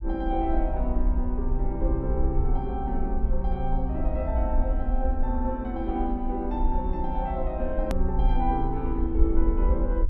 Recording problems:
low-frequency rumble; below 54 Hz, SNR -1 dB
click at an edit; at 8 s

